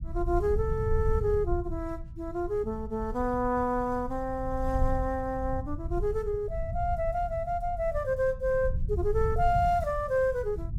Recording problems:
rumble; below 86 Hz, SNR 6 dB

